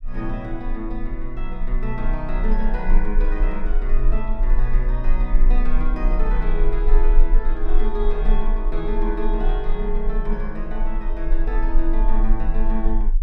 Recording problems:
low-frequency rumble; below 32 Hz, strongest tone 22 Hz, SNR -5 dB

